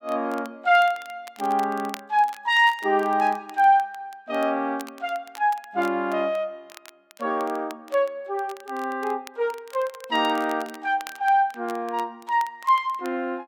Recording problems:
crackle; vinyl, SNR 22 dB

